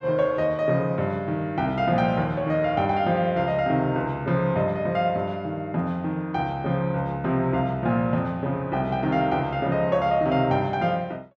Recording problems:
none

